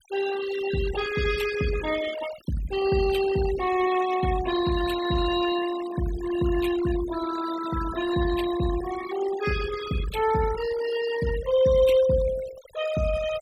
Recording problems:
denoising artefacts; signal-to-artefact ratio 12 dB

